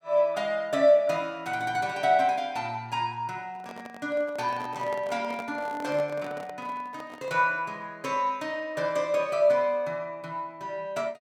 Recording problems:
microphone handling noise; from 3.5 to 7.5 s; peak -8 dB vs average level

